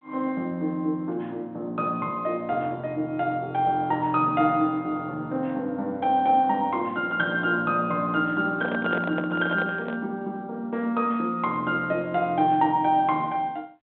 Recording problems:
phone line; 190 Hz to 4 kHz, G.726
handling noise; from 8.5 to 10 s; peak -2 dB vs average level

